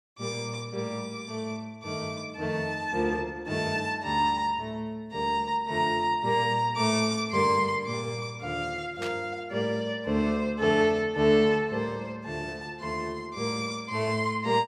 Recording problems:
burst of static; at 9 s; peak -5 dB vs average level

